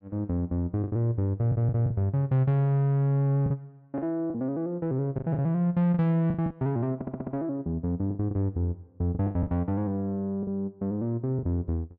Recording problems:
lost packets; 8% of the sound replaced, filled with the last packet
audio stuttering; at 1.5 s and at 7 s

